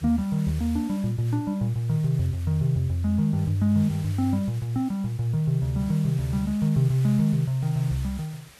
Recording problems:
background hiss; slope -1 dB per octave, SNR 22 dB

